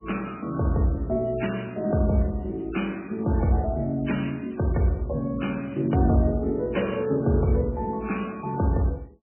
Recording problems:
lossy codec; MP3, log-spectral distance 6 dB, nothing above 3 kHz

